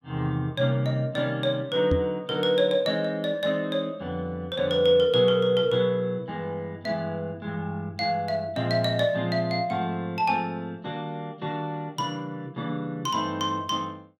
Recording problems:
knock on the microphone; at 2 s; peak +3 dB vs average level

